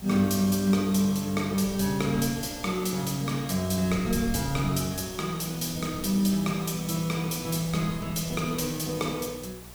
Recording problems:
hum; 60 Hz, harmonics up to 840 Hz, SNR 22 dB
background hiss; slope -2 dB per octave, SNR 18 dB
wind on the microphone; below 160 Hz, SNR 16 dB

